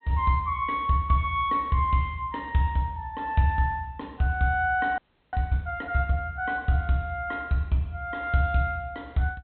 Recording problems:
treble cut off; nothing above 4.1 kHz
audio freezing; at 5 s

